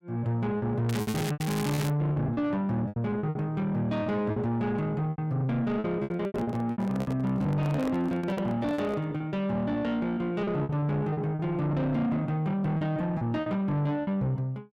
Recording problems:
distortion; soft clipping, signal-to-distortion ratio 11 dB
lost packets; 12% of the sound replaced, filled with repeated pitch periods
crackling; from 1 to 2 s; loose cable, SNR 8 dB
handling noise; from 6 to 9 s; peak -3 dB vs average level

